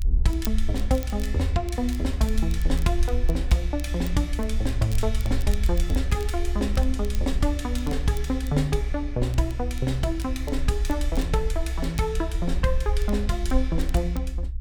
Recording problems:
low-frequency rumble; below 62 Hz, SNR 1 dB
crackle; vinyl, SNR 20 dB

